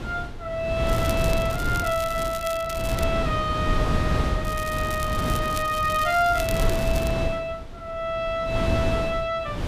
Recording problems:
wind noise; below 290 Hz, SNR 2 dB
crackling; from 1 to 3 s and from 4.5 to 7 s; loose cable, SNR 11 dB

